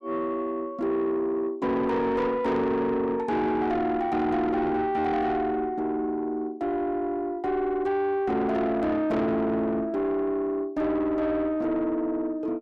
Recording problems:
distorted audio; soft clipping, signal-to-distortion ratio 10 dB

